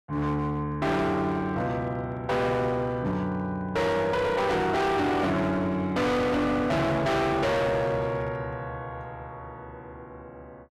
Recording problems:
distortion; hard clipping, signal-to-distortion ratio 6 dB

